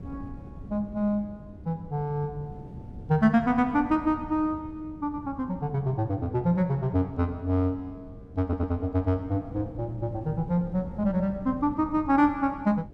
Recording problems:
hum; 50 Hz, harmonics up to 700 Hz, SNR 24 dB
wind on the microphone; below 200 Hz, SNR 16 dB
stutter; at 8.5 s

